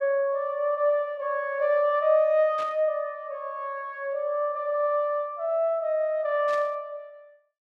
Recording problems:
burst of static; at 2.5 s and at 6.5 s; peak -13 dB vs average level

